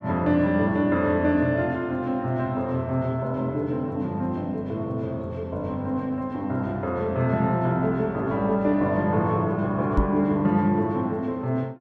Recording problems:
microphone thump; at 10 s; peak +5 dB vs average level

